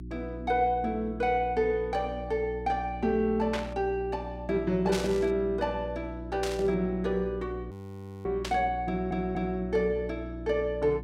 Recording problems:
hum; 60 Hz, harmonics up to 360 Hz, SNR 11 dB
burst of static; 4 times, first at 3.5 s; peak -1 dB vs average level
frozen audio; at 7.5 s for 0.5 s
stutter; at 9 s

